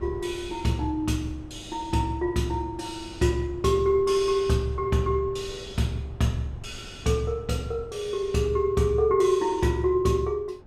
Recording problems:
wind noise; below 260 Hz, SNR 20 dB

